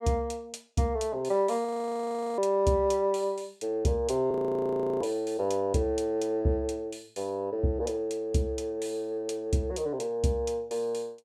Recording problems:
frozen audio; at 1.5 s for 0.5 s and at 4.5 s for 0.5 s

